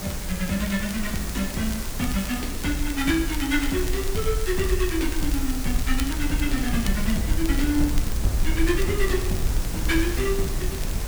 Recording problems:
hiss; slope -3 dB per octave, SNR 7 dB
rumble; below 50 Hz, strongest tone 22 Hz, SNR 5 dB
wind on the microphone; below 170 Hz, SNR 9 dB
crackle; vinyl, SNR 14 dB

